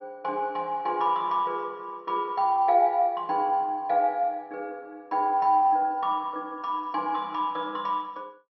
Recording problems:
treble missing; nothing above 5.5 kHz

